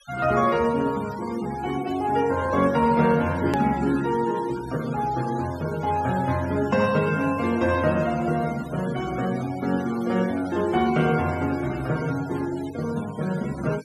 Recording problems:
denoising artefacts; signal-to-artefact ratio 17 dB
click at an edit; at 3.5 s

